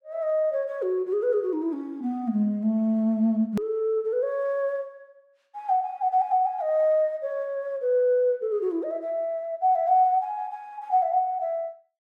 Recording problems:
edit click; at 3.5 s

